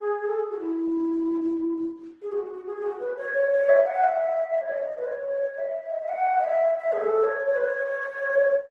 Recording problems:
lossy codec; Opus, then Opus, log-spectral distance 2 dB

